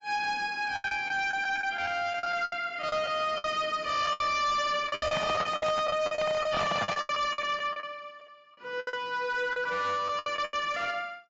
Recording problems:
lossy codec; AAC, then AAC, log-spectral distance 3 dB, nothing above 7.6 kHz
distortion; hard clipping, signal-to-distortion ratio 10 dB
packet loss; 14% of the sound replaced, filled with the last packet
microphone handling noise; from 5 to 7 s; peak +3 dB vs average level

